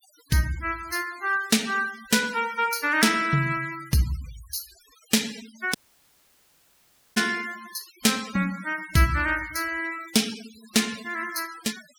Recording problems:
denoising artefacts; signal-to-artefact ratio 17 dB
audio cutting out; at 6 s for 1.5 s

